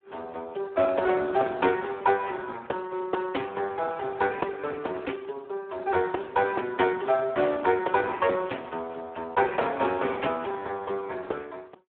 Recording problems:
telephone audio; 300 Hz to 3.4 kHz, Speex

